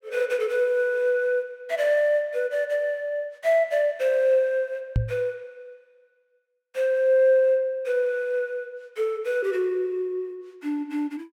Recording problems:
knock on the microphone; at 5 s; peak +4 dB vs average level

